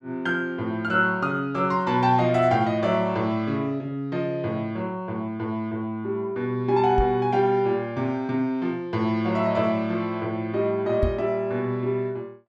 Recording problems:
knock on the microphone; at 7 s and at 11 s; peak +4 dB vs average level

